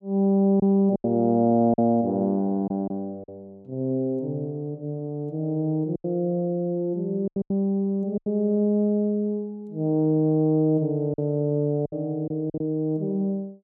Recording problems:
packet loss; 5% of the sound replaced, filled with silence

